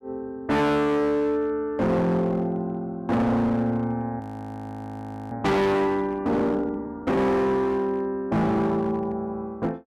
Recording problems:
distortion; hard clipping, signal-to-distortion ratio 6 dB
audio freezing; at 4 s for 1 s

